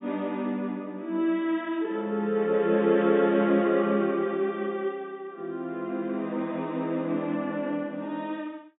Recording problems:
treble missing; nothing above 4 kHz

